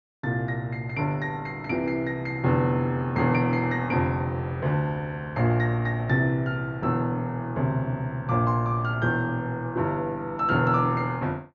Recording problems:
treble missing; nothing above 6.6 kHz

